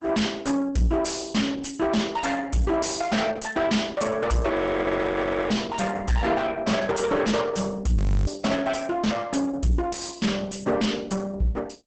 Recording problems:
lossy compression; Opus, log-spectral distance 4 dB, nothing above 8 kHz
distortion; soft clipping, signal-to-distortion ratio 6 dB
audio freezing; at 4.5 s for 1 s and at 8 s

